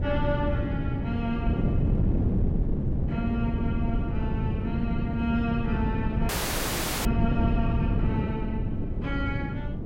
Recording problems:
wind on the microphone; below 200 Hz, SNR -4 dB
audio cutting out; at 6.5 s for 1 s

